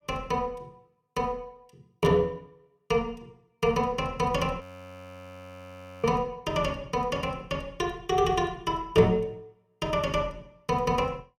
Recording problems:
frozen audio; at 4.5 s for 1.5 s

